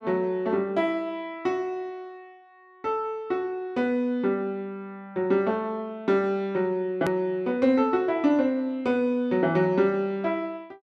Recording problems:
edit click; at 7 s

